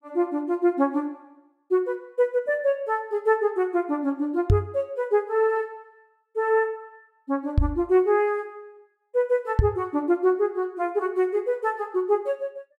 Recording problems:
microphone bump; at 4.5 s, at 7.5 s and at 9.5 s; peak +8 dB vs average level

